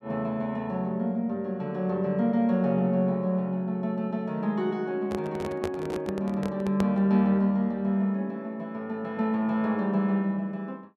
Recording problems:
handling noise; from 5 to 7 s; peak 0 dB vs average level

